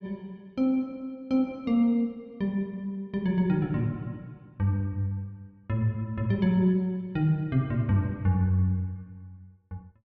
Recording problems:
none

